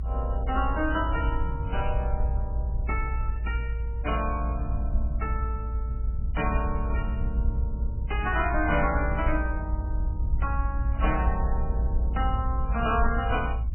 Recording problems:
lossy codec; AAC, then MP3, log-spectral distance 2 dB, nothing above 2.5 kHz
low-frequency rumble; below 62 Hz, strongest tone 56 Hz, SNR -2 dB

